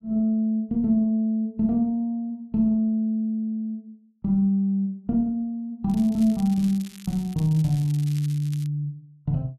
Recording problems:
crackling; from 6 to 8.5 s; loose cable, SNR 22 dB

